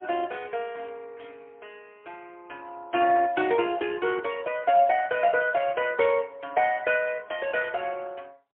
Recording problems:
phone line; 300 Hz to 3.3 kHz, AMR-NB, then MP3

